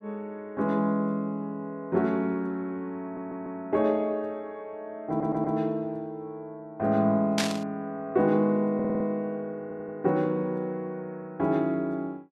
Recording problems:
audio stuttering; 4 times, first at 3 s
static burst; at 7.5 s; peak +5 dB vs average level

